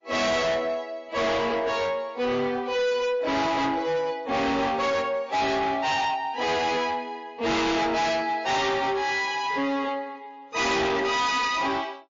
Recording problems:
lossy codec; MP3, log-spectral distance 2 dB, nothing above 6.2 kHz
distortion; soft clipping, signal-to-distortion ratio 6 dB

